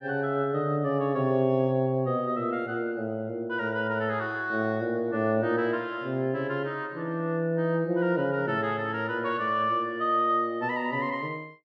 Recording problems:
none

